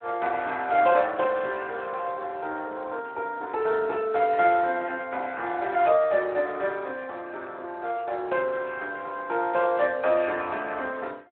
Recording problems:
phone line; 300 Hz to 3.5 kHz, Speex

